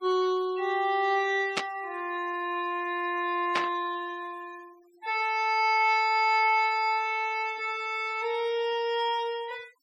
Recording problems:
denoising artefacts; signal-to-artefact ratio 24 dB
static burst; at 1.5 s and at 3.5 s; peak +3 dB vs average level

